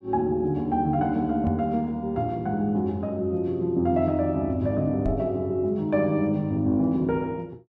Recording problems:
knock on the microphone; at 1.5 s and at 5 s; peak -1 dB vs average level

